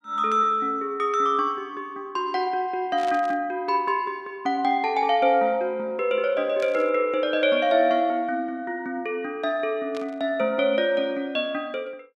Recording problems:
burst of static; at 3 s, at 6.5 s and at 10 s; peak -11 dB vs average level

